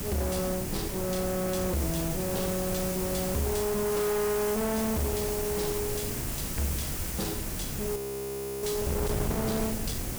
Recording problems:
distortion; soft clipping, signal-to-distortion ratio 7 dB
hum; 50 Hz, harmonics up to 400 Hz, SNR 22 dB
background hiss; slope 0 dB per octave, SNR 4 dB
wind on the microphone; below 410 Hz, SNR 6 dB
frozen audio; at 8 s for 0.5 s

